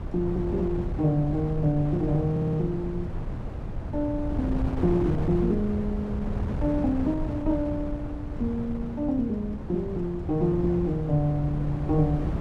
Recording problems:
wind on the microphone; below 200 Hz, SNR 5 dB
audio stuttering; at 2.5 s

